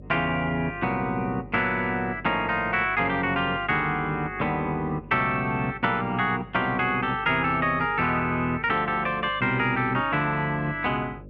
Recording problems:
hum; 50 Hz, harmonics up to 600 Hz, SNR 20 dB

